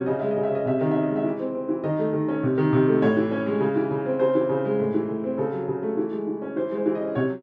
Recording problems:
none

